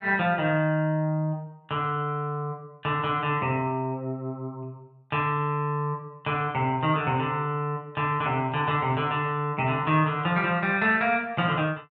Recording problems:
none

